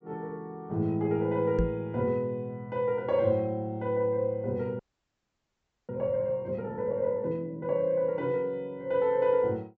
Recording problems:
low-pass filter; nothing above 7.8 kHz
microphone thump; at 1.5 s; peak +4 dB vs average level
frozen audio; at 5 s for 1 s

